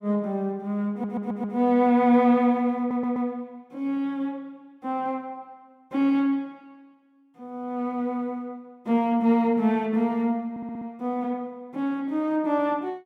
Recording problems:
audio stuttering; at 1 s, at 3 s and at 11 s

